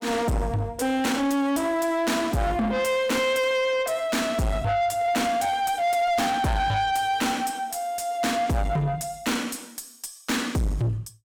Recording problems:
distortion; soft clipping, signal-to-distortion ratio 6 dB

